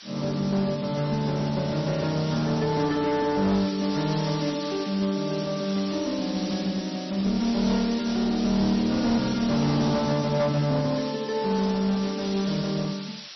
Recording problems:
lossy codec; MP3, log-spectral distance 13 dB, nothing above 5.7 kHz
distorted audio; hard clipping, uneven, signal-to-distortion ratio 10 dB
hiss; slope +4 dB per octave, SNR 12 dB

